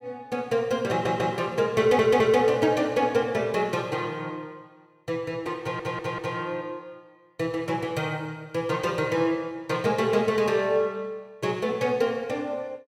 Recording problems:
stutter; at 1 s, at 2 s and at 5.5 s

